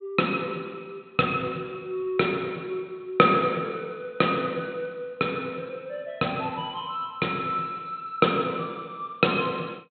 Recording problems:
treble missing; nothing above 4 kHz

